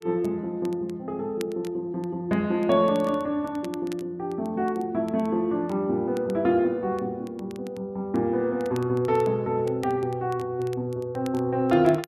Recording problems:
crackle; vinyl, SNR 25 dB

